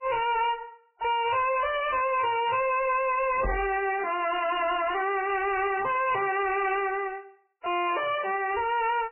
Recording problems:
lossy compression; MP3, log-spectral distance 6 dB, nothing above 2.8 kHz
distorted audio; hard clipping, uneven, signal-to-distortion ratio 5 dB
microphone bump; at 3.5 s; peak +1 dB vs average level

